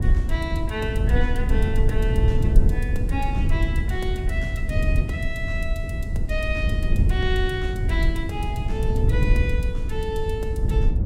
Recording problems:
low-frequency rumble; below 92 Hz, SNR -5 dB

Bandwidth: 16 kHz